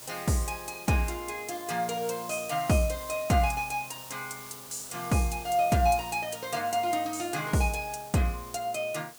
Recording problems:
background hiss; SNR 14 dB

